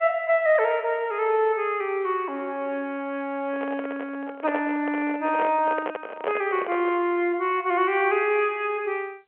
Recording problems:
phone line; 280 Hz to 3.3 kHz, G.711
handling noise; from 3.5 to 7 s; peak 0 dB vs average level

